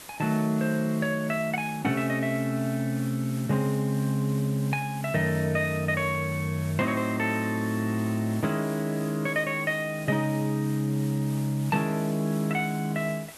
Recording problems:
hiss; slope -2 dB per octave, SNR 17 dB

